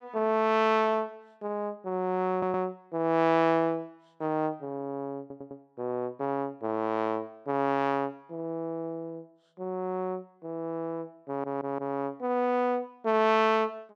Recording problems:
stutter; at 2.5 s, at 5 s and at 11 s

